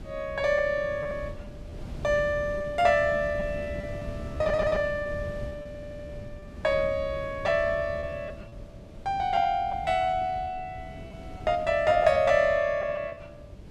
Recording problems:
wind noise; below 220 Hz, SNR 14 dB
packet loss; 7% of the sound replaced, filled with repeated pitch periods
stutter; at 4.5 s and at 5.5 s

